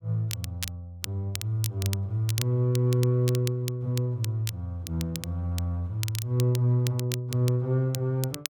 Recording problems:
crackle; vinyl, SNR 11 dB

